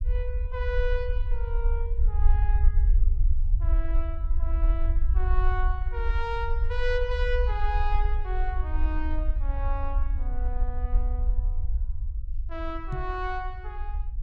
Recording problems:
low-frequency rumble; below 52 Hz, SNR -6 dB
microphone bump; at 13 s; peak +5 dB vs average level

